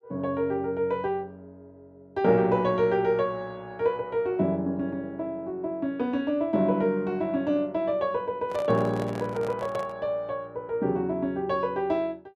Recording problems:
microphone handling noise; from 8.5 to 10 s; peak -7 dB vs average level

